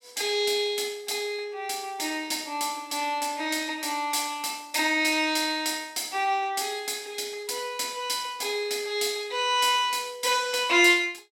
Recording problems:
none

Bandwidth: 16.5 kHz